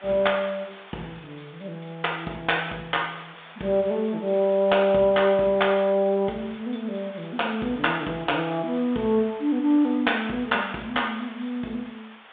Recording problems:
phone line; 190 Hz to 3.6 kHz, G.726
background hiss; SNR 21 dB

